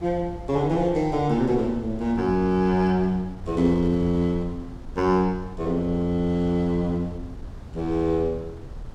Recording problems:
wind on the microphone; below 120 Hz, SNR 16 dB

